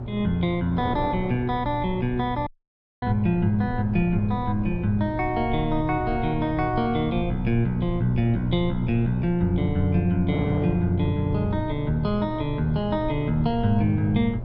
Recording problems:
electrical hum; 60 Hz, harmonics up to 600 Hz, SNR 11 dB
rumble; below 82 Hz, SNR 14 dB
wind noise; below 560 Hz, SNR 16 dB
audio cutting out; at 2.5 s for 0.5 s

